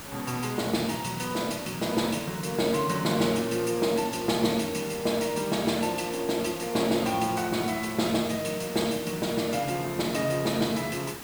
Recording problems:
background hiss; slope -3 dB per octave, SNR 12 dB

